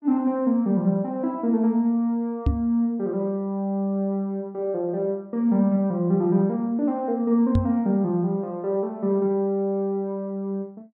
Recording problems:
microphone thump; at 2.5 s and at 7.5 s; peak +5 dB vs average level

